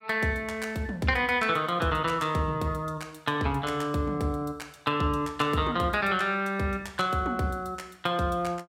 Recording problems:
none

